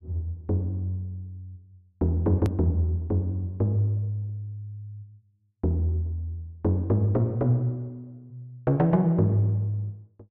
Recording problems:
click at an edit; at 2.5 s

